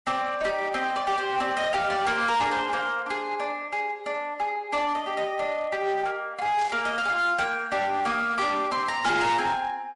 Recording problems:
codec artefacts; MP3, log-spectral distance 2 dB, nothing above 10.7 kHz
distorted audio; hard clipping, uneven, signal-to-distortion ratio 10 dB
burst of static; at 6.5 s; peak -12 dB vs average level

